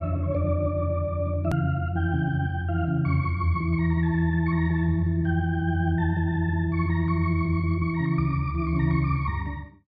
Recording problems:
edit click; at 1.5 s

